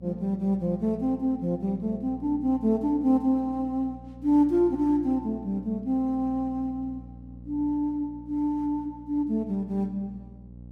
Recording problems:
mains hum; 60 Hz, harmonics up to 540 Hz, SNR 19 dB

